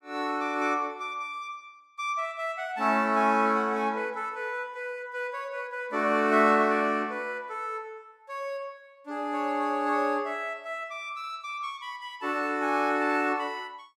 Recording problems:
none

